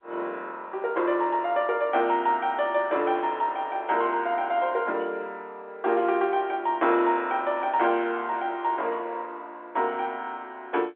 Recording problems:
phone line; 300 Hz to 3.6 kHz, G.711

